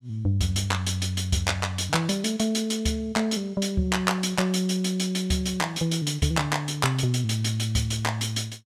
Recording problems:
none

